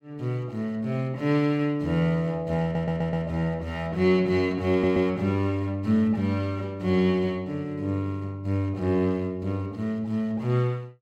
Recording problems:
stutter; at 2.5 s and at 4.5 s

